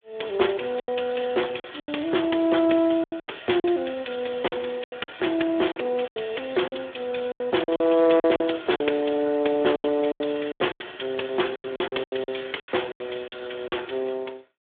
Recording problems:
telephone audio; 260 Hz to 3.5 kHz, Speex
lost packets; 13% of the sound replaced, filled with silence

